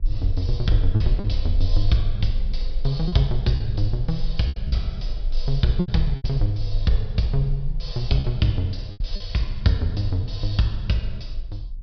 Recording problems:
treble missing; nothing above 5.5 kHz
electrical hum; 50 Hz, harmonics up to 500 Hz, SNR 24 dB
rumble; below 40 Hz, SNR 6 dB
lost packets; 5% of the sound replaced, filled with repeated pitch periods

